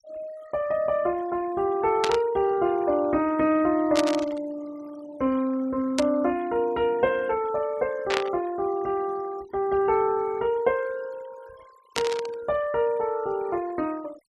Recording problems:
denoising artefacts; signal-to-artefact ratio 21 dB
burst of static; 5 times, first at 2 s; peak +2 dB vs average level

